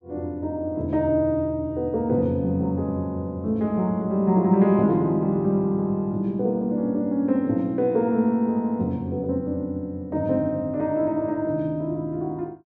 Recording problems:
none

